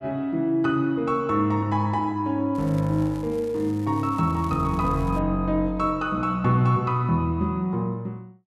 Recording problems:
crackle; from 2.5 to 5 s; loose cable, SNR 26 dB

